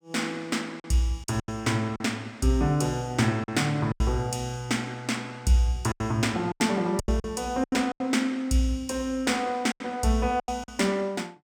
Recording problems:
packet loss; 9% of the sound replaced, filled with silence

